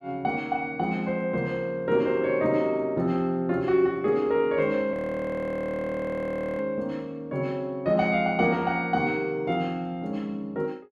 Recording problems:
audio freezing; at 5 s for 1.5 s

